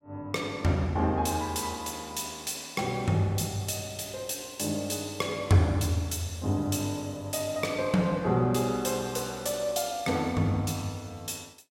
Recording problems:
none

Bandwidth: 16 kHz